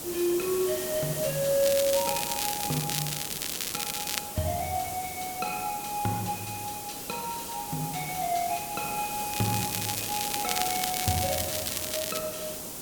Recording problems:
hiss; SNR 3 dB
crackling; from 1.5 to 4 s and from 9.5 to 12 s; loose cable, SNR 1 dB

